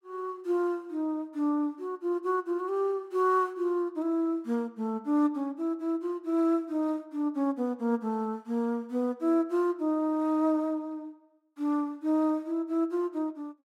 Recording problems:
none

